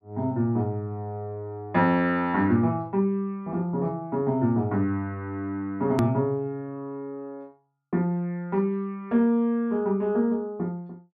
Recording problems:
edit click; at 6 s

